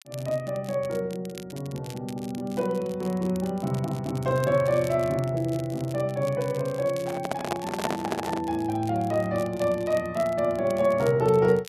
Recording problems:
crackle; vinyl, SNR 20 dB
microphone handling noise; from 7 to 8.5 s; peak +3 dB vs average level

